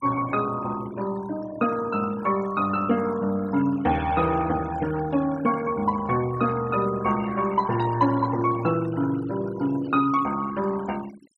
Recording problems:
noise reduction artefacts; signal-to-artefact ratio 16 dB

